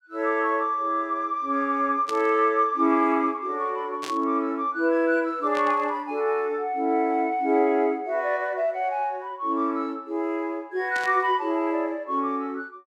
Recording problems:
static burst; 4 times, first at 2 s; peak -7 dB vs average level

